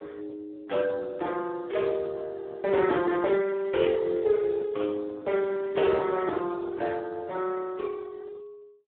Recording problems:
phone line; 220 Hz to 3.5 kHz, Speex

